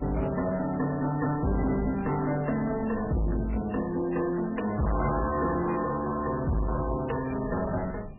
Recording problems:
lossy codec; MP3, log-spectral distance 5 dB, nothing above 2.9 kHz
distortion; soft clipping, signal-to-distortion ratio 7 dB
wind noise; below 270 Hz, SNR 16 dB

